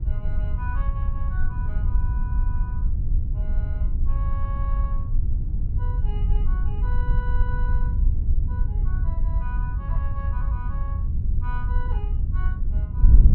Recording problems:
wind on the microphone; below 68 Hz, SNR -15 dB

